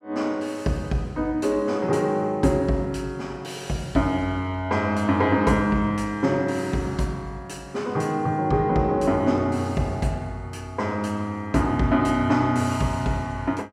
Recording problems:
none

